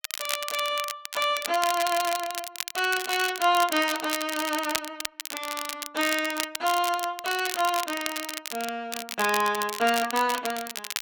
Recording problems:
crackle; vinyl, SNR 6 dB

